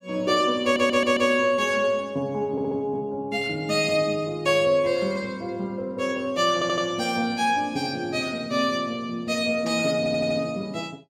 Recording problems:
audio stuttering; 4 times, first at 0.5 s

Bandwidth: 16 kHz